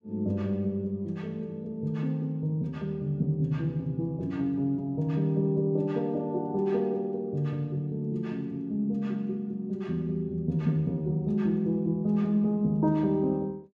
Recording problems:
none

